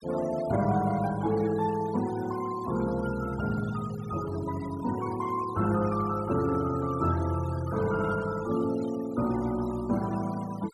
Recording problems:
noise reduction artefacts; signal-to-artefact ratio 16 dB

